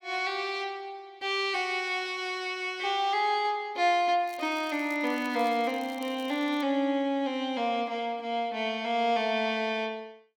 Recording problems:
crackle; from 4.5 to 6.5 s; loose cable, SNR 23 dB

